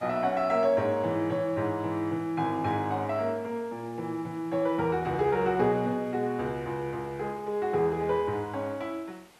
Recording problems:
background hiss; SNR 27 dB

